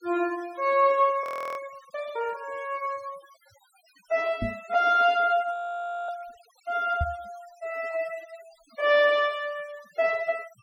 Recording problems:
noise reduction artefacts; signal-to-artefact ratio 23 dB
frozen audio; at 1 s and at 5.5 s for 0.5 s
microphone thump; at 4.5 s and at 7 s; peak +1 dB vs average level

